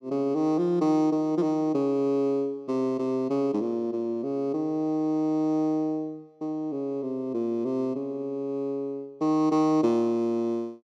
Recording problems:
none

